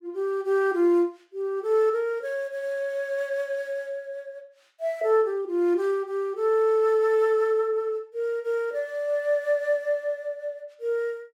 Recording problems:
none

